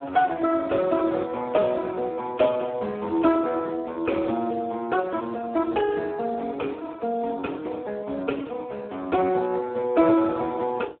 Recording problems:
phone line; 220 Hz to 2.5 kHz, Speex

